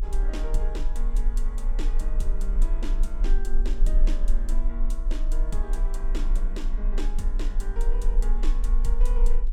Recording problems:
rumble; below 36 Hz, strongest tone 26 Hz, SNR -10 dB

